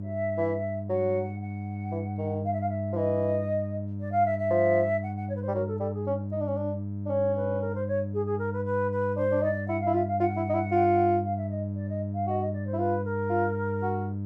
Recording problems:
electrical hum; 50 Hz, harmonics up to 600 Hz, SNR 5 dB

